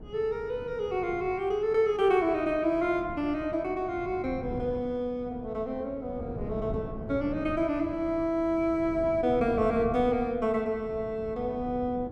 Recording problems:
wind on the microphone; below 300 Hz, SNR 13 dB

